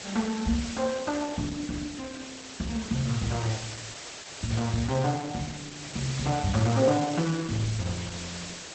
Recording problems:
lossy compression; Opus, log-spectral distance 14 dB
hiss; slope -1 dB per octave, SNR 9 dB

